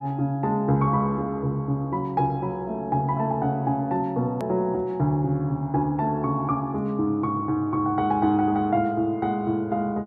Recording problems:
edit click; at 4.5 s

